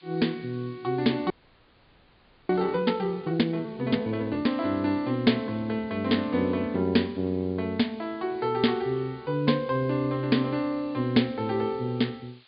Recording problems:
treble cut off; nothing above 4.7 kHz
hiss; SNR 30 dB
audio freezing; at 1.5 s for 1 s

